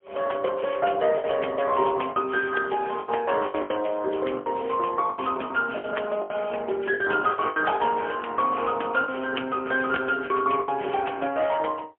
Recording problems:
phone line; 280 Hz to 3.2 kHz, AMR-NB, then MP3
lost packets; 10% of the sound replaced, filled with the last packet

